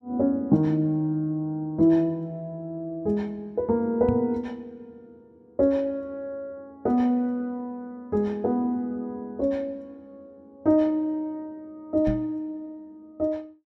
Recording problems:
knock on the microphone; at 4 s and at 12 s; peak +1 dB vs average level

